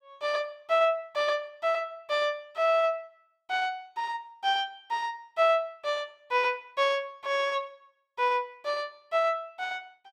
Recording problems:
none

